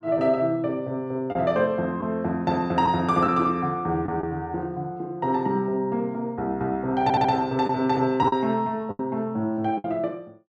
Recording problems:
lost packets; 3% of the sound replaced, filled with the last packet
audio stuttering; at 7 s

